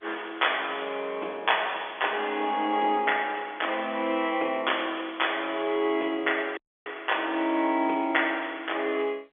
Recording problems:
phone line; 280 Hz to 3.5 kHz, G.711
audio cutting out; at 6.5 s

